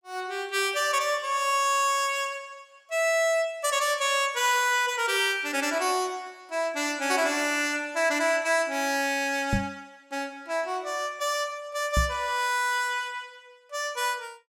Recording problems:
knock on the microphone; at 9.5 s and at 12 s; peak +3 dB vs average level

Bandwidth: 16 kHz